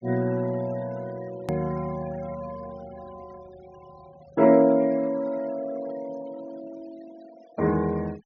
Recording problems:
treble missing; nothing above 6.5 kHz
denoising artefacts; signal-to-artefact ratio 23 dB
edit click; at 1.5 s

